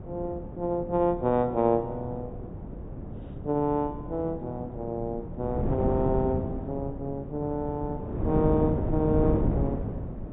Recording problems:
treble cut off; nothing above 4 kHz
wind noise; below 310 Hz, SNR 4 dB

